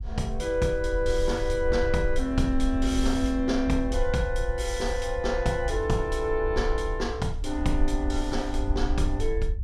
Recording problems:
rumble; below 56 Hz, SNR 5 dB

